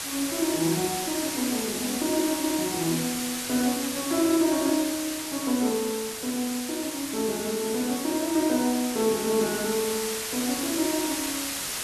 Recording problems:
hiss; slope +1 dB per octave, SNR 3 dB

